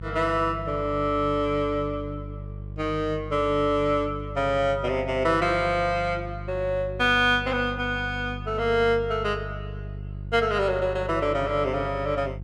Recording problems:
hum; 50 Hz, harmonics up to 500 Hz, SNR 12 dB

